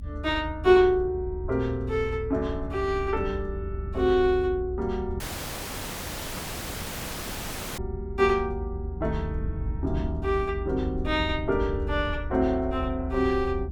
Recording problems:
low-frequency rumble; below 80 Hz, SNR 8 dB
dropout; at 5 s for 2.5 s

